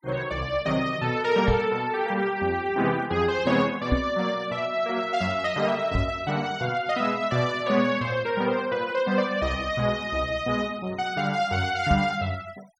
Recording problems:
denoising artefacts; signal-to-artefact ratio 22 dB
microphone thump; 4 times, first at 1.5 s; peak +4 dB vs average level

